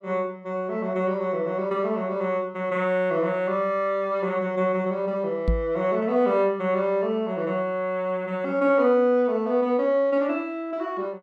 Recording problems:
microphone thump; at 5.5 s; peak +4 dB vs average level

